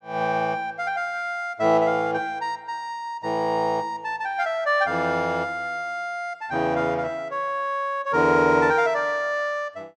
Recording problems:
none

